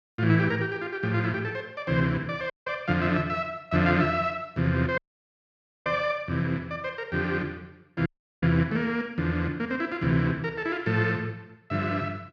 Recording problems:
audio cutting out; at 2.5 s, at 5 s for 1 s and at 8 s

